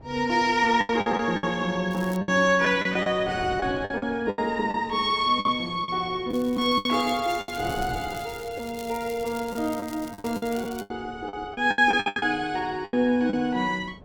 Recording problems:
wind noise; below 480 Hz, SNR 20 dB
lost packets; 11% of the sound replaced, filled with the last packet
crackling; at 2 s and from 6.5 to 11 s; loose cable, SNR 20 dB

